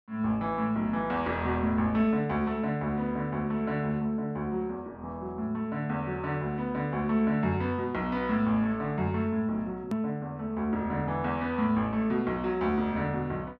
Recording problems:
click at an edit; at 10 s

